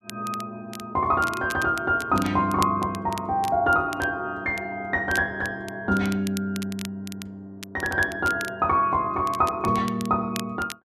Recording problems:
crackling; vinyl, SNR 16 dB

